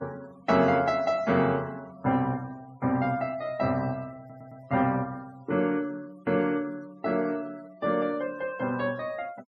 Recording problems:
noise reduction artefacts; signal-to-artefact ratio 25 dB
stutter; at 4 s

